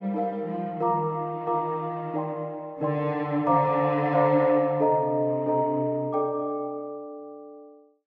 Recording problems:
none

